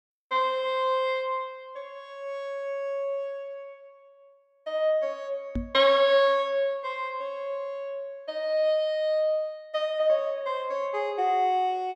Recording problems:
microphone bump; at 5.5 s; peak -1 dB vs average level

